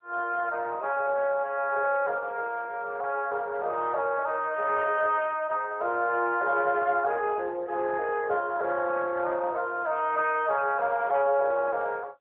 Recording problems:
telephone audio; 370 Hz to 3.4 kHz, AMR-NB

